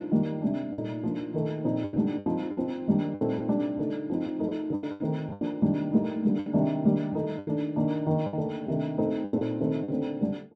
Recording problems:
packet loss; 9% of the sound replaced, filled with the last packet

